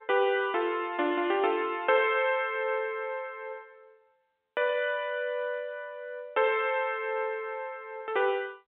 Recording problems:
telephone audio; 240 Hz to 3.6 kHz, G.711

